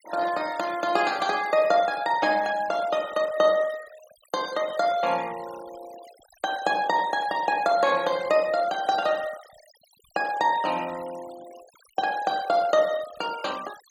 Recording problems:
noise reduction artefacts; signal-to-artefact ratio 20 dB

